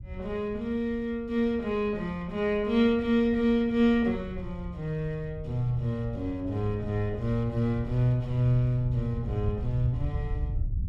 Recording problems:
low-frequency rumble; below 100 Hz, SNR 11 dB

